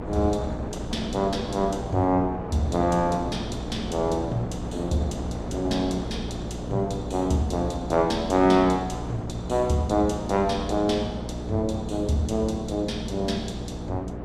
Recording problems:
hum; 60 Hz, harmonics up to 480 Hz, SNR 9 dB
wind on the microphone; below 650 Hz, SNR 10 dB

